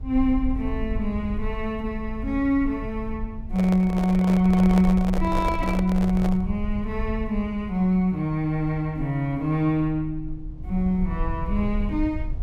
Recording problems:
rumble; below 64 Hz, SNR 10 dB
microphone handling noise; from 3.5 to 6.5 s; peak -2 dB vs average level

